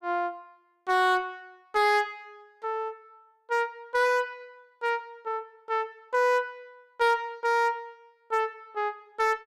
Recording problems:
distorted audio; hard clipping, signal-to-distortion ratio 11 dB

